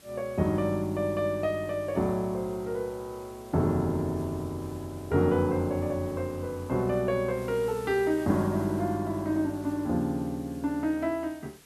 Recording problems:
hiss; SNR 23 dB

